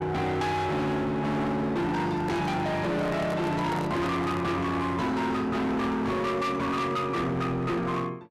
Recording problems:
distortion; hard clipping, signal-to-distortion ratio 6 dB
microphone handling noise; from 2 to 4.5 s; peak -2 dB vs average level

